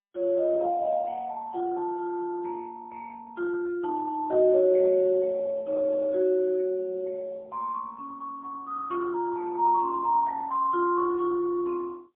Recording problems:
telephone audio; 300 Hz to 2.1 kHz, AMR-NB, then MP3
burst of static; at 9 s; peak -17 dB vs average level

